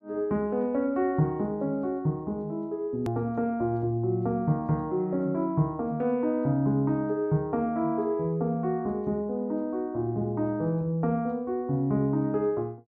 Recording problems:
edit click; at 3 s

